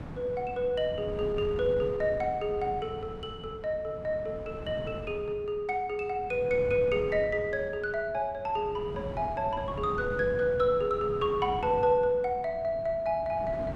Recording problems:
wind on the microphone; below 330 Hz, SNR 12 dB

